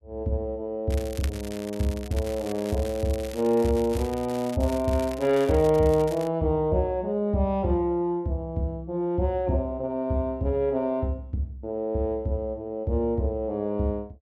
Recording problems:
crackle; from 1 to 6.5 s; loose cable, SNR 17 dB

